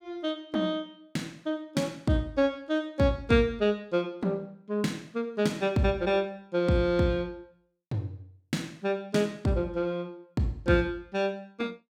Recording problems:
none

